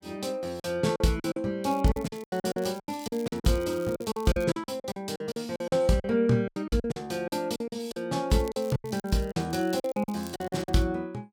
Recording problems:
packet loss; 17% of the sound replaced, filled with silence
crackling; from 1.5 to 4.5 s and from 8.5 to 11 s; loose cable, SNR 21 dB

